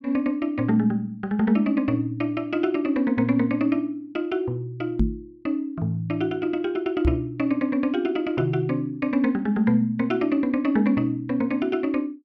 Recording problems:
microphone bump; at 5 s and at 7 s; peak +6 dB vs average level

